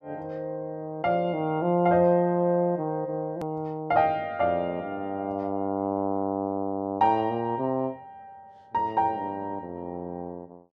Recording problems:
edit click; at 3.5 s

